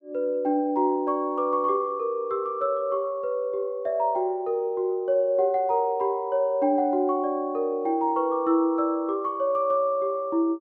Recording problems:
none

